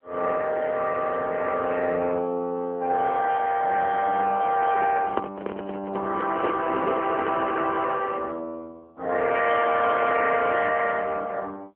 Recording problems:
phone line; 220 Hz to 2.5 kHz, AMR-NB
handling noise; from 4.5 to 8 s; peak +1 dB vs average level

